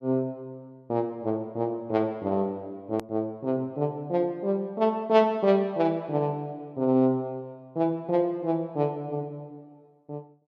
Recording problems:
click at an edit; at 3 s

